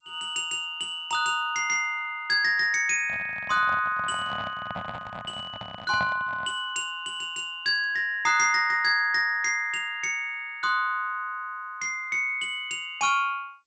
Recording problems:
codec artefacts; G.722, log-spectral distance 2 dB, nothing above 7.6 kHz
handling noise; from 3 to 6.5 s; peak -5 dB vs average level

